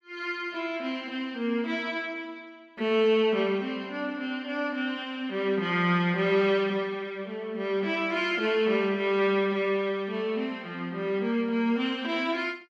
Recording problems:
none

